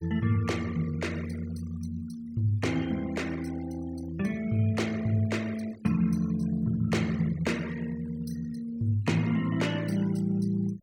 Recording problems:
noise reduction artefacts; signal-to-artefact ratio 19 dB

